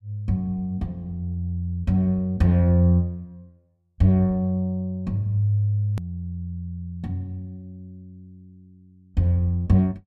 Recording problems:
hard cut with a click; at 6 s

